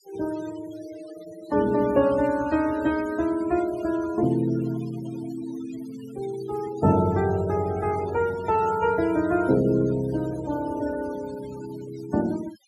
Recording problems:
noise reduction artefacts; signal-to-artefact ratio 17 dB

